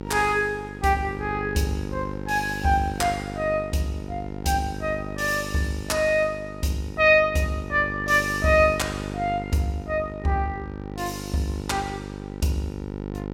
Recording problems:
hum; 50 Hz, harmonics up to 1 kHz, SNR 10 dB

